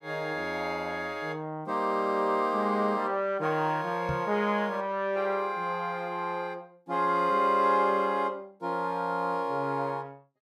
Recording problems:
knock on the microphone; at 4 s; peak -2 dB vs average level

